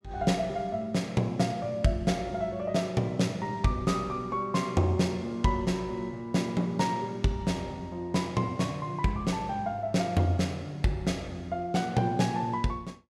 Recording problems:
none

